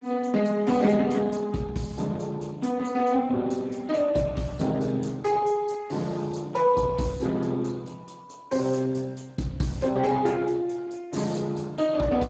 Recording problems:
lossy compression; Speex, log-spectral distance 4 dB, nothing above 7.6 kHz

